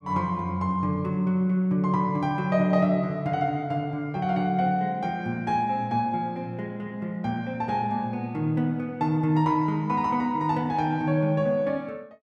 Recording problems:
none

